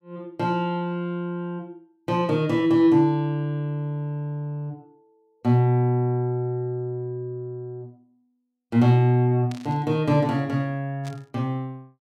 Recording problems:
static burst; at 9.5 s and at 11 s; peak -14 dB vs average level

